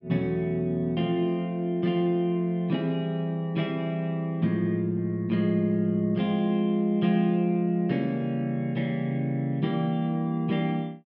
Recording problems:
low-pass filter; nothing above 5.5 kHz

